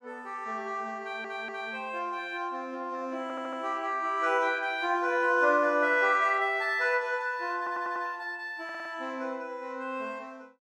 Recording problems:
stutter; 4 times, first at 1 s

